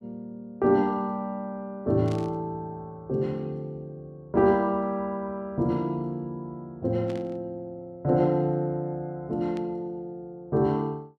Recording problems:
burst of static; at 2 s, at 7 s and at 9.5 s; peak -13 dB vs average level

